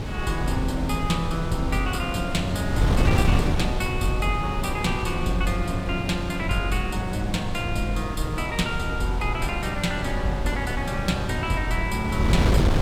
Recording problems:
wind noise; below 230 Hz, SNR 1 dB

